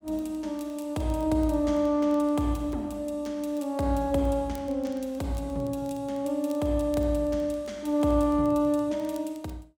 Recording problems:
crackling; vinyl, SNR 29 dB

